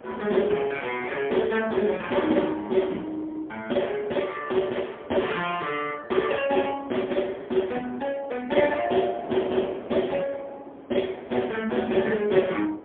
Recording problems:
phone line; 220 Hz to 3.4 kHz, AMR-NB, then MP3
wind on the microphone; below 700 Hz, SNR 18 dB

